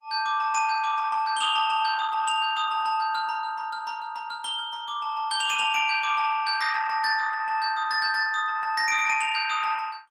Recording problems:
lossy compression; Opus, log-spectral distance 4 dB

